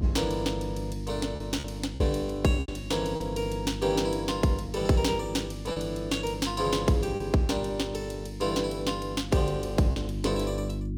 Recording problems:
electrical hum; 50 Hz, harmonics up to 350 Hz, SNR 8 dB
packet loss; 3% of the sound replaced, filled with repeated pitch periods

